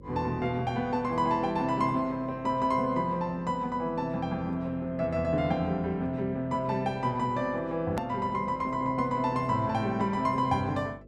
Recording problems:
hum; 50 Hz, harmonics up to 550 Hz, SNR 22 dB
hard cut with a click; at 8 s

